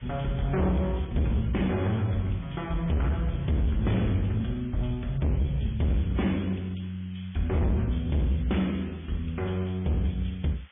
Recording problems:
treble cut off; nothing above 3.4 kHz
codec artefacts; MP3, log-spectral distance 7 dB
distortion; hard clipping, signal-to-distortion ratio 8 dB
hiss; SNR 27 dB

